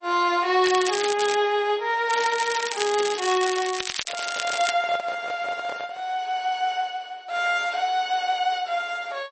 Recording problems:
lossy compression; MP3, log-spectral distance 6 dB, nothing above 6.9 kHz
crackle; at 0.5 s and from 2 to 4.5 s; loose cable, SNR 6 dB
microphone handling noise; from 4 to 6 s; peak -6 dB vs average level

